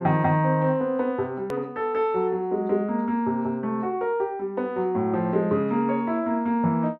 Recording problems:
click at an edit; at 1.5 s

